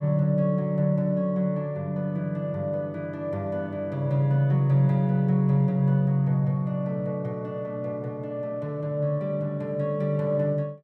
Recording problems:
none

